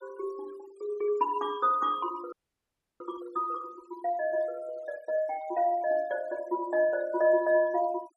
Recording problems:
denoising artefacts; signal-to-artefact ratio 23 dB
frozen audio; at 2.5 s for 0.5 s

